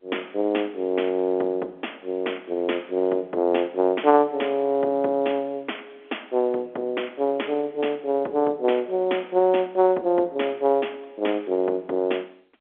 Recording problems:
phone line; 280 Hz to 3.4 kHz, G.711

